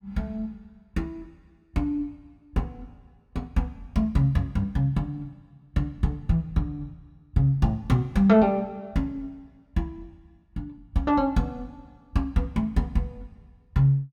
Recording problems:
none

